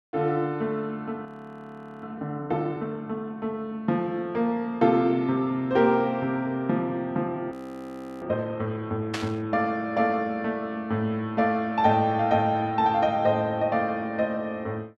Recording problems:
audio freezing; at 1.5 s for 1 s and at 7.5 s for 0.5 s
static burst; at 9 s; peak -1 dB vs average level

